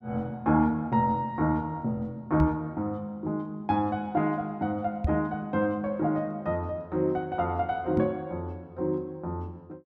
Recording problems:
microphone thump; at 2.5 s, at 5 s and at 8 s; peak +5 dB vs average level

